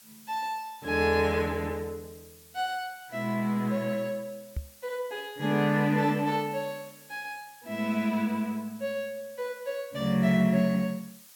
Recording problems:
hiss; slope +2 dB per octave, SNR 23 dB
microphone thump; at 4.5 s; peak -1 dB vs average level

